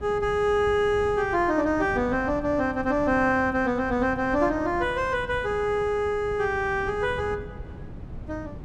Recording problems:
wind noise; below 210 Hz, SNR 15 dB

